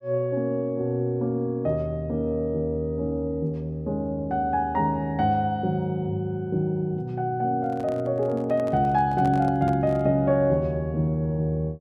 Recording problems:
microphone handling noise; from 7.5 to 10 s; peak -8 dB vs average level

